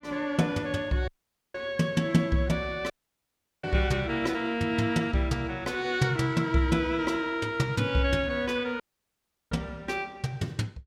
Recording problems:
dropout; at 1 s, at 3 s for 0.5 s and at 9 s for 0.5 s

